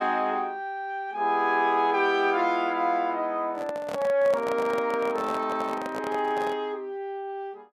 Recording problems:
handling noise; from 3.5 to 6.5 s; peak -3 dB vs average level

